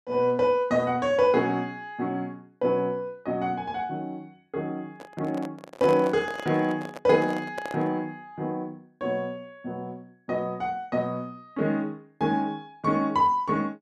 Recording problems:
handling noise; from 5 to 8 s; peak -3 dB vs average level

